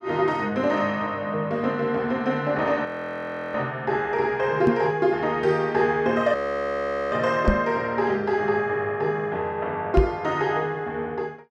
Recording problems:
frozen audio; at 3 s for 0.5 s and at 6.5 s for 1 s
microphone thump; at 4.5 s, at 7.5 s and at 10 s; peak +7 dB vs average level

